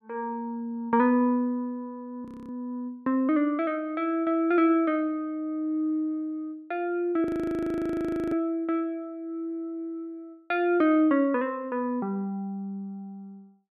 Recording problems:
audio freezing; at 2.5 s and at 7 s for 1 s

